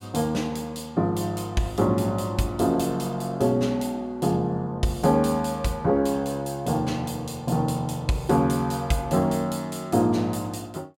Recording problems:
none

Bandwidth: 16 kHz